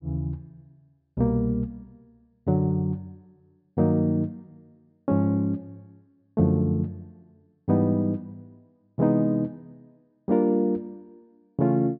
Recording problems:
low-pass filter; nothing above 5.5 kHz

